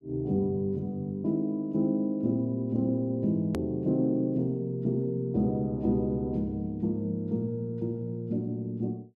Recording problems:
hard cut with a click; at 3.5 s

